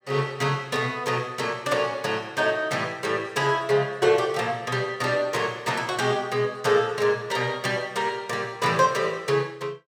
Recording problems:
none

